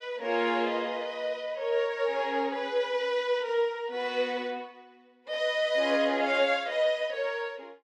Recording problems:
none

